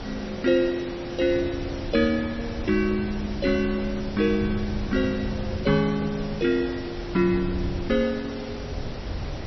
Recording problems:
lossy compression; MP3, log-spectral distance 7 dB, nothing above 5.7 kHz
background hiss; slope -5 dB per octave, SNR 12 dB
wind noise; below 120 Hz, SNR 11 dB

